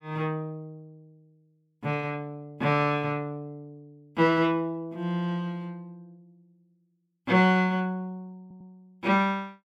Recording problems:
stutter; at 8.5 s

